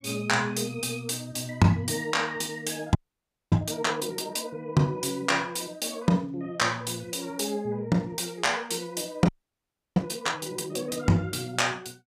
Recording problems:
audio freezing; at 3 s for 0.5 s and at 9.5 s for 0.5 s

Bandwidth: 15.5 kHz